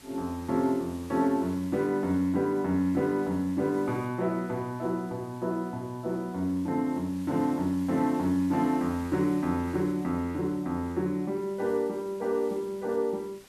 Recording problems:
background hiss; SNR 23 dB

